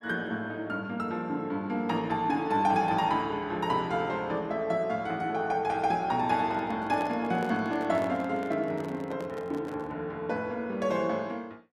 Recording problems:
handling noise; from 6.5 to 10 s; peak -5 dB vs average level

